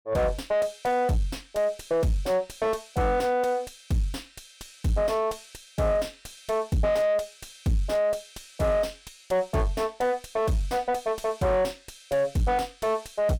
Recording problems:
distorted audio; soft clipping, signal-to-distortion ratio 6 dB

